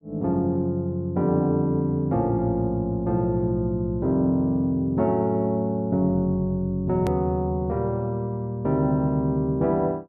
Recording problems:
hard cut with a click; at 7 s

